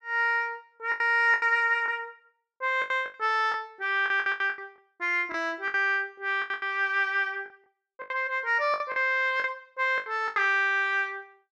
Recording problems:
packet loss; 13% of the sound replaced, filled with the last packet

